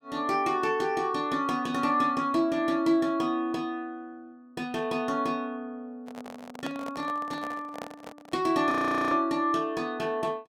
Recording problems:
microphone handling noise; from 6 to 8.5 s; peak -5 dB vs average level
frozen audio; at 8.5 s

